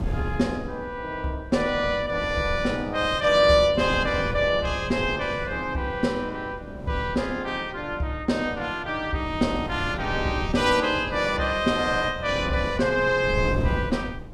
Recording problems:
wind on the microphone; below 230 Hz, SNR 11 dB

